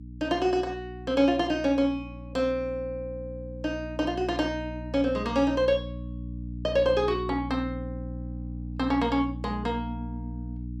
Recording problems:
electrical hum; 60 Hz, harmonics up to 300 Hz, SNR 10 dB

